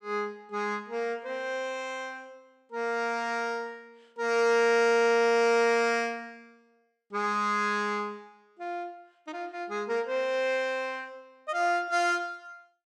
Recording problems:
none

